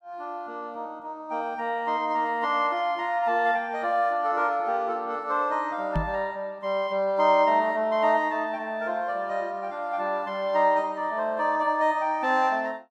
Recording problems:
microphone thump; at 6 s; peak +1 dB vs average level

